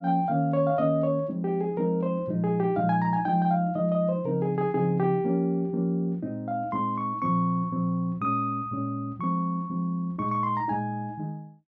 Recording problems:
treble cut off; nothing above 8 kHz

